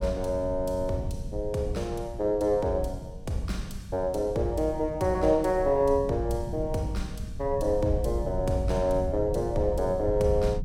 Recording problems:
low-frequency rumble; below 120 Hz, SNR 10 dB

